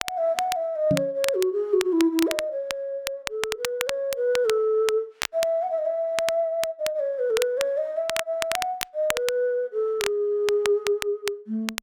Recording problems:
crackle; vinyl, SNR 8 dB
knock on the microphone; at 1 s; peak +4 dB vs average level

